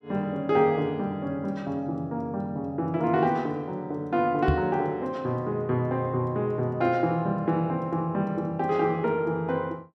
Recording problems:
microphone bump; at 4.5 s; peak +6 dB vs average level

